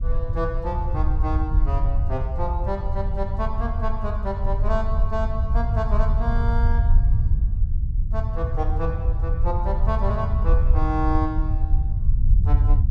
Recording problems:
rumble; below 76 Hz, SNR -6 dB

